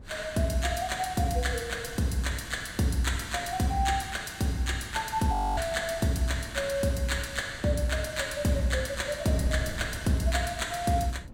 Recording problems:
wind noise; below 200 Hz, SNR 17 dB
frozen audio; at 5.5 s

